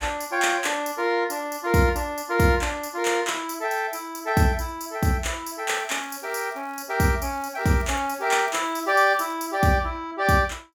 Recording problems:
crackling; from 5.5 to 7 s and from 7.5 to 9.5 s; loose cable, SNR 28 dB

